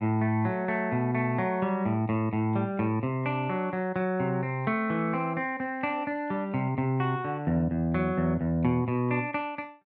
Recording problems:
none

